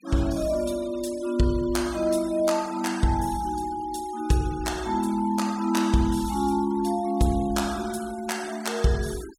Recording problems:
noise reduction artefacts; signal-to-artefact ratio 18 dB

